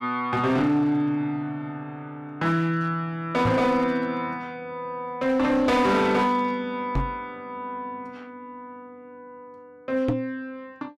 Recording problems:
distorted audio; hard clipping, signal-to-distortion ratio 11 dB
microphone thump; at 3.5 s, at 7 s and at 10 s; peak +3 dB vs average level

